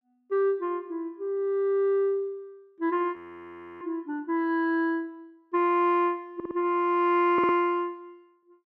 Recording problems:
audio freezing; at 3 s for 0.5 s
stutter; at 6.5 s and at 7.5 s

